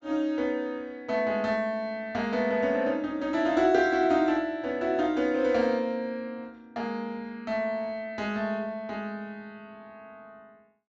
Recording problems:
treble missing; nothing above 8 kHz

